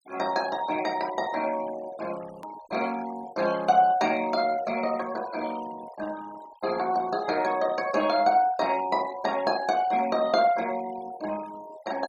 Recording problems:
noise reduction artefacts; signal-to-artefact ratio 18 dB
edit click; at 2.5 s

